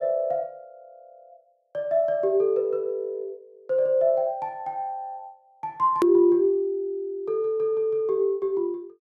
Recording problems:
click at an edit; at 6 s

